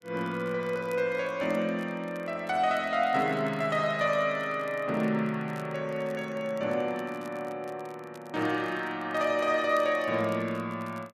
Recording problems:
crackling; vinyl, SNR 27 dB

